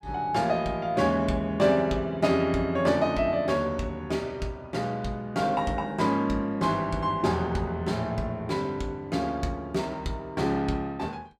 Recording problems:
none

